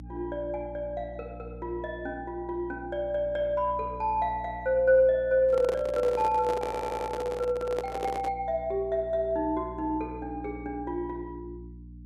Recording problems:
hum; 60 Hz, harmonics up to 300 Hz, SNR 16 dB
handling noise; from 5.5 to 8.5 s; peak 0 dB vs average level
audio stuttering; at 6.5 s

